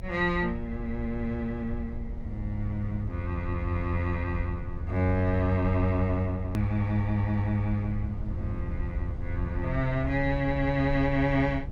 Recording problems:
low-frequency rumble; below 90 Hz, SNR 7 dB
click at an edit; at 6.5 s

